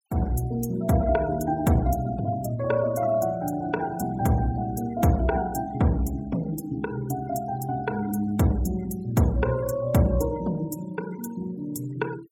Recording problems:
denoising artefacts; signal-to-artefact ratio 22 dB

